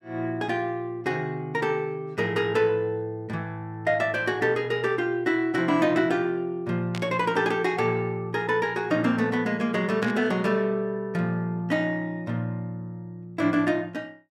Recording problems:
burst of static; at 7 s and at 10 s; peak -5 dB vs average level

